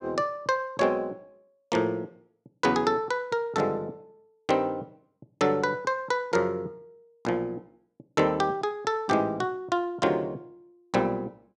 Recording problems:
none

